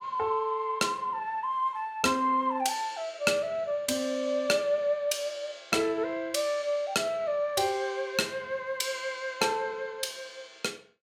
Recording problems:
none

